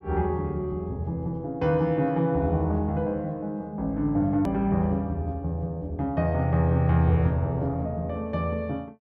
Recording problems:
edit click; at 4.5 s

